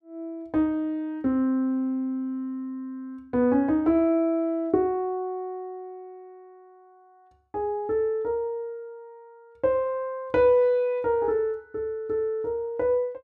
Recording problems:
none

